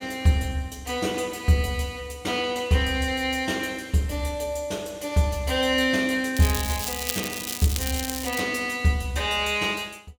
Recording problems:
crackle; from 6.5 to 8.5 s; loose cable, SNR 5 dB

